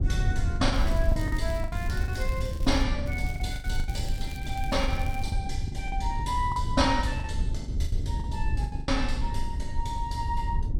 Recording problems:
low-frequency rumble; below 84 Hz, SNR -1 dB
packet loss; 10% of the sound replaced, filled with the last packet
crackle; from 0.5 to 3 s and from 3 to 5.5 s; loose cable, SNR 18 dB

